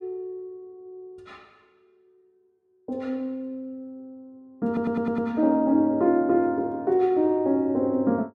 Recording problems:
stutter; at 4.5 s

